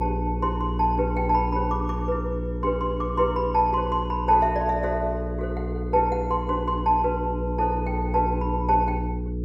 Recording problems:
mains hum; 60 Hz, harmonics up to 480 Hz, SNR 4 dB

